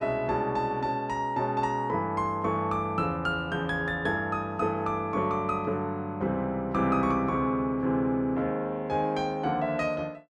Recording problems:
none

